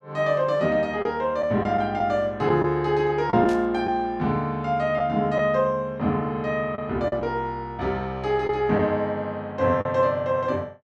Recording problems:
lost packets; 3% of the sound replaced, filled with the last packet
static burst; at 3.5 s; peak -13 dB vs average level

